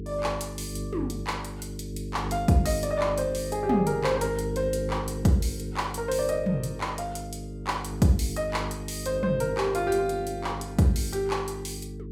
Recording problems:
electrical hum; 50 Hz, harmonics up to 450 Hz, SNR 8 dB

